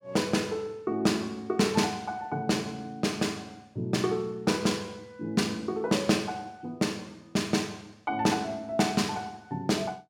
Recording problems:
none

